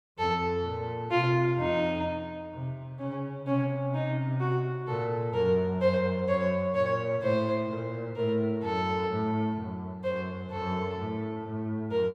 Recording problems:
none

